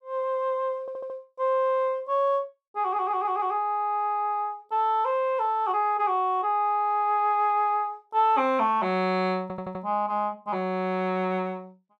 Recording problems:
audio stuttering; at 1 s, at 3 s and at 9.5 s

